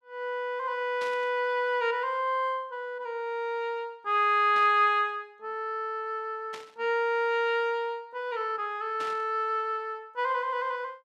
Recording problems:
burst of static; 4 times, first at 1 s; peak -9 dB vs average level

